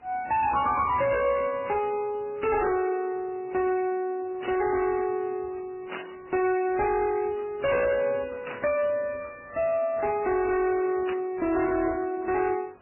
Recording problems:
lossy codec; MP3, then AAC, log-spectral distance 4 dB, nothing above 2.4 kHz
distortion; hard clipping, signal-to-distortion ratio 10 dB
background hiss; SNR 29 dB
burst of static; 4 times, first at 4.5 s; peak -6 dB vs average level

